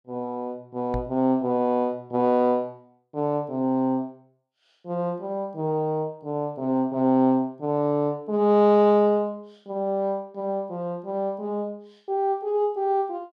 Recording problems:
microphone thump; at 1 s; peak -4 dB vs average level

